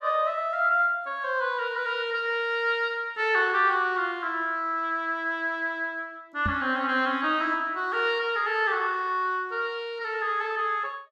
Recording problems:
microphone bump; at 6.5 s; peak -1 dB vs average level

